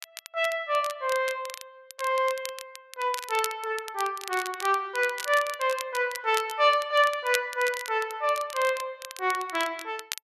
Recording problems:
crackling; vinyl, SNR 13 dB

